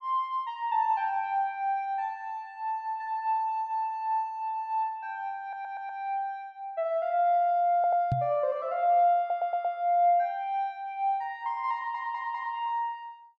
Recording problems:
stutter; 4 times, first at 5.5 s
microphone bump; at 8 s; peak +3 dB vs average level

